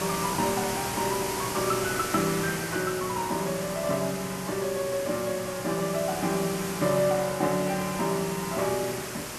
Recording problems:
hiss; slope -3 dB per octave, SNR 5 dB

